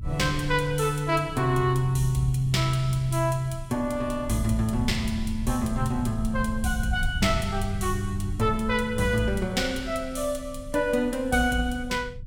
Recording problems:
low-frequency rumble; below 100 Hz, strongest tone 26 Hz, SNR 10 dB

